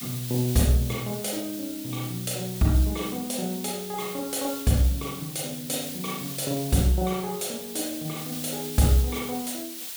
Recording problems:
hiss; slope +3 dB per octave, SNR 8 dB

